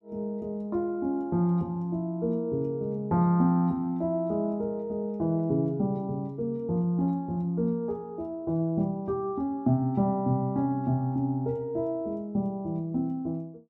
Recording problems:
none

